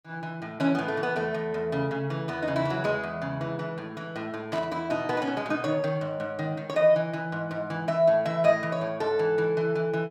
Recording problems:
burst of static; at 4.5 s; peak -8 dB vs average level

